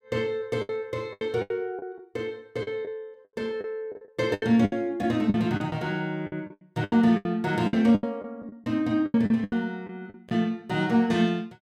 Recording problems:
lost packets; 14% of the sound replaced, filled with the last packet

